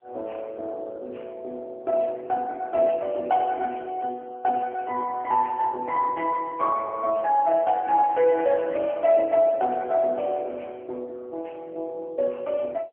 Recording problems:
telephone audio; 280 Hz to 2.7 kHz, AMR-NB

